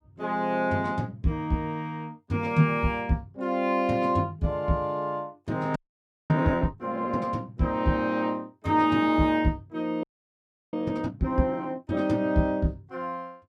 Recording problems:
audio freezing; at 6 s for 0.5 s and at 10 s for 0.5 s

